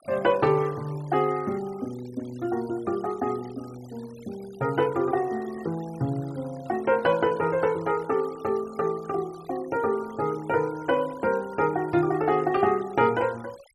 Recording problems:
noise reduction artefacts; signal-to-artefact ratio 23 dB

